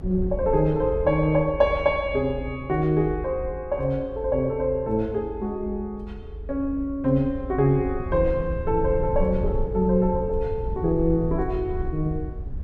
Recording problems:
low-frequency rumble; below 76 Hz, SNR 10 dB

